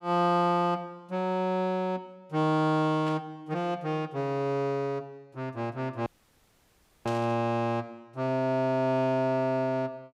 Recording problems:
static burst; at 3 s and at 7 s; peak -10 dB vs average level
audio cutting out; at 6 s for 1 s

